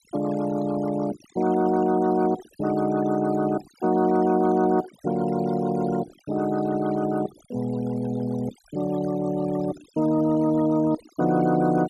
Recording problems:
noise reduction artefacts; signal-to-artefact ratio 17 dB

